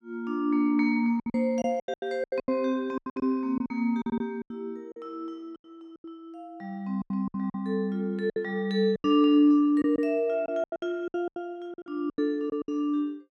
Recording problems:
lost packets; 14% of the sound replaced, filled with silence

